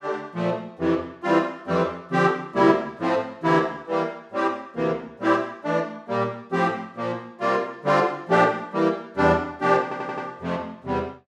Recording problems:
stutter; at 10 s

